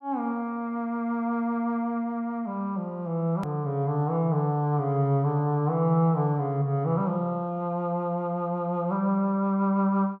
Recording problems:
click at an edit; at 3.5 s

